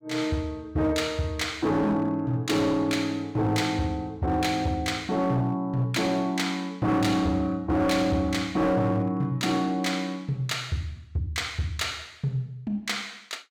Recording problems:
distorted audio; hard clipping, signal-to-distortion ratio 12 dB

